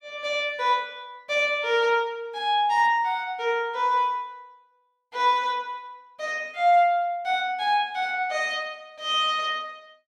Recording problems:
none

